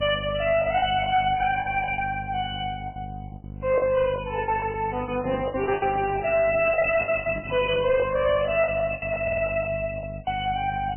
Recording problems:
codec artefacts; MP3, log-spectral distance 6 dB, nothing above 2.7 kHz
distorted audio; hard clipping, uneven, signal-to-distortion ratio 9 dB
electrical hum; 50 Hz, harmonics up to 750 Hz, SNR 14 dB
packet loss; 14% of the sound replaced, filled with the last packet
microphone handling noise; from 5 to 8 s; peak -7 dB vs average level
audio stuttering; at 9 s

